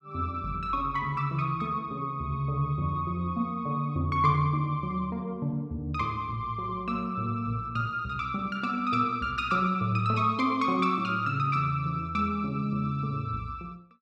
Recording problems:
none

